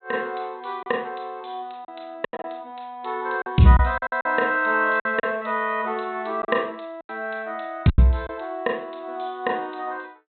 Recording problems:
low-pass filter; nothing above 4.1 kHz
lost packets; 7% of the sound replaced, filled with silence

